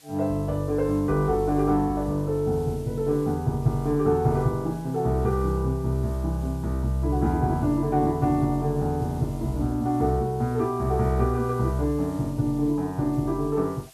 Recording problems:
hiss; SNR 26 dB

